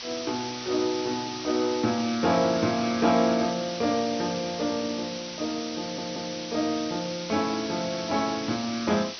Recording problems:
low-pass filter; nothing above 6.1 kHz
background hiss; slope +2 dB per octave, SNR 8 dB
audio stuttering; at 6 s

